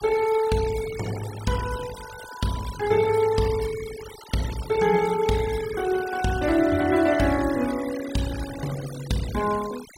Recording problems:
noise reduction artefacts; signal-to-artefact ratio 15 dB

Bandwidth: 16 kHz